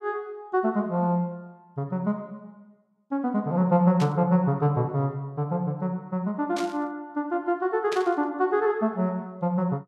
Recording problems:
burst of static; at 4 s, at 6.5 s and at 8 s; peak -5 dB vs average level

